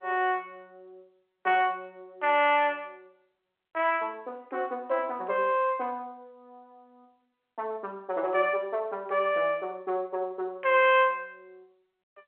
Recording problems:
telephone audio; 320 Hz to 3.3 kHz, G.711

